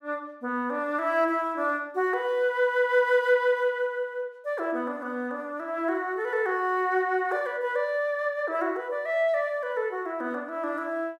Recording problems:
none

